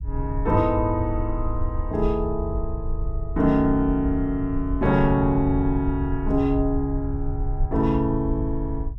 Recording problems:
low-frequency rumble; below 74 Hz, SNR 6 dB

